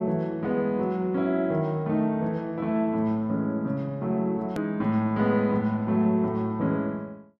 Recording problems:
hard cut with a click; at 4.5 s

